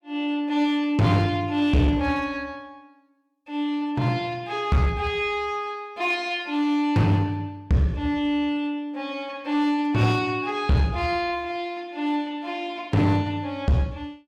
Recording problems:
distorted audio; hard clipping, uneven, signal-to-distortion ratio 10 dB

